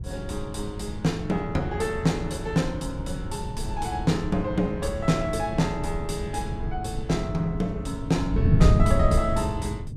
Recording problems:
wind noise; below 140 Hz, SNR 2 dB

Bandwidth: 14.5 kHz